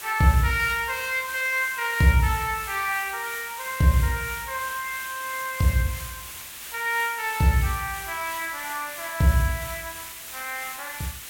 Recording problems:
background hiss; SNR 11 dB

